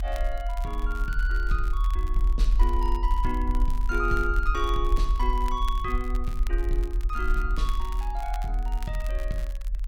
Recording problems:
low-frequency rumble; below 42 Hz, strongest tone 40 Hz, SNR -3 dB
crackle; vinyl, SNR 17 dB

